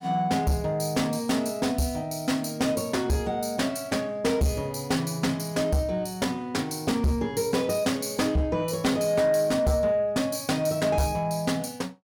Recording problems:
distortion; soft clipping, signal-to-distortion ratio 12 dB

